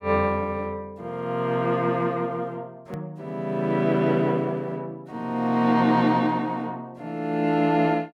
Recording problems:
click at an edit; at 3 s

